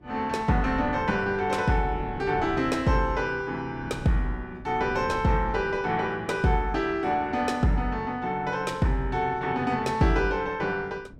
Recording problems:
wind on the microphone; below 260 Hz, SNR 17 dB

